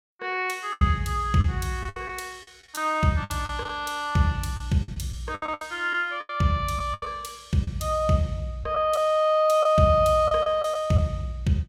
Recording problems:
packet loss; 9% of the sound replaced, filled with the last packet

